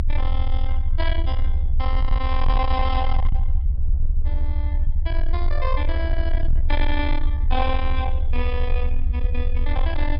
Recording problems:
treble cut off; nothing above 5.5 kHz
distorted audio; soft clipping, signal-to-distortion ratio 12 dB
low-frequency rumble; below 62 Hz, strongest tone 20 Hz, SNR -4 dB
wind noise; below 350 Hz, SNR 16 dB

